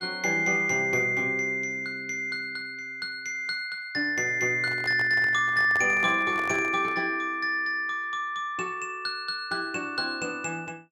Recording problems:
handling noise; from 4.5 to 7 s; peak -7 dB vs average level

